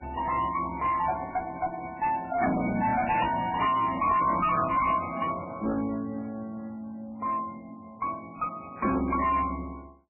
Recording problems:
lossy compression; MP3, then MP3, log-spectral distance 3 dB, nothing above 2.4 kHz
distortion; hard clipping, uneven, signal-to-distortion ratio 7 dB

